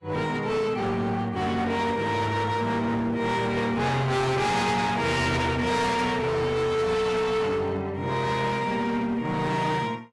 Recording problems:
lossy codec; AAC, log-spectral distance 2 dB, nothing above 11.3 kHz
distorted audio; hard clipping, signal-to-distortion ratio 6 dB

